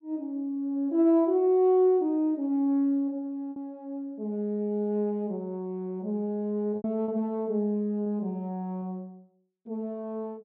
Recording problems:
packet loss; 2% of the sound replaced, filled with repeated pitch periods

